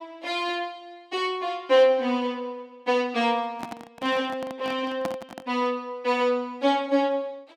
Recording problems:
handling noise; from 3.5 to 5.5 s; peak -2 dB vs average level

